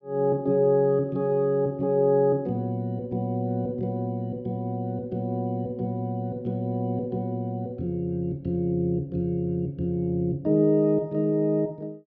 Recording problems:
none

